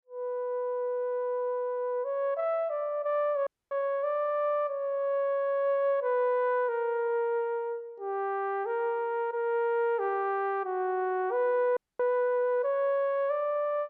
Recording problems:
audio cutting out; at 3.5 s and at 12 s

